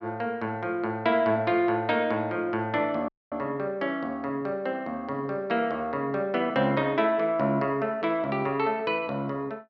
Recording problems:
dropout; at 3 s

